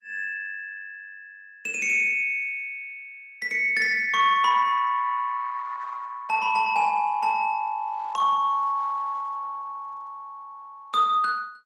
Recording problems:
codec artefacts; Opus, log-spectral distance 2 dB, nothing above 16.6 kHz

